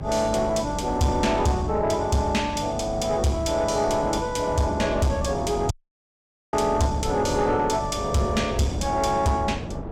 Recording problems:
distortion; soft clipping, signal-to-distortion ratio 11 dB
hum; 50 Hz, harmonics up to 850 Hz, SNR 16 dB
wind noise; below 430 Hz, SNR 10 dB
audio cutting out; at 5.5 s for 1 s

